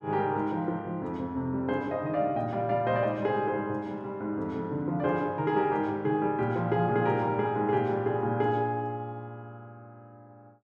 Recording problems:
none

